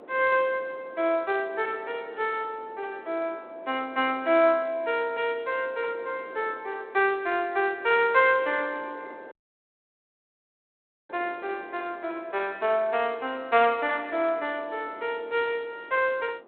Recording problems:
telephone audio; 300 Hz to 3.6 kHz, G.726
wind noise; below 700 Hz, SNR 22 dB
audio cutting out; at 9.5 s for 2 s

